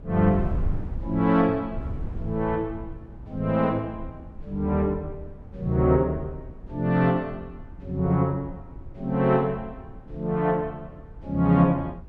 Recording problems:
wind noise; below 110 Hz, SNR 14 dB

